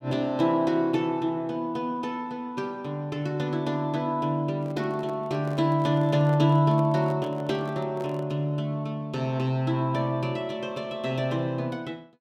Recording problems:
handling noise; from 4.5 to 8.5 s; peak -9 dB vs average level

